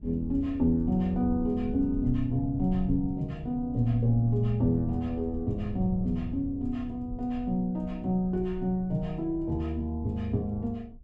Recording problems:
rumble; below 80 Hz, SNR 13 dB

